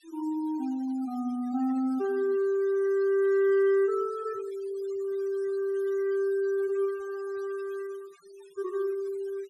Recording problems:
denoising artefacts; signal-to-artefact ratio 24 dB

